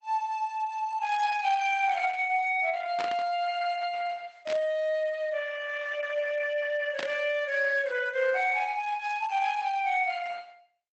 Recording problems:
lossy compression; Opus, log-spectral distance 3 dB, nothing above 7.6 kHz
burst of static; at 3 s, at 4.5 s and at 7 s; peak -4 dB vs average level

